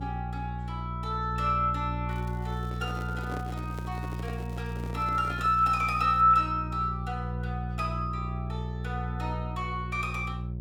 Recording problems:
hum; 60 Hz, harmonics up to 540 Hz, SNR 5 dB
crackling; from 2 to 6 s; loose cable, SNR 27 dB
microphone handling noise; from 2.5 to 5.5 s; peak -6 dB vs average level

